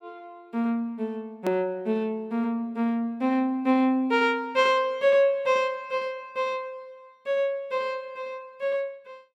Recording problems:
edit click; at 1.5 s

